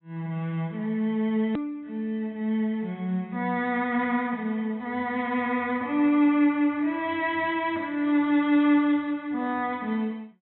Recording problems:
treble missing; nothing above 4 kHz
edit click; at 1.5 s

